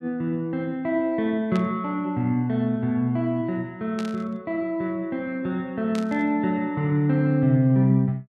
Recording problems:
static burst; at 1.5 s, at 4 s and at 6 s; peak -9 dB vs average level

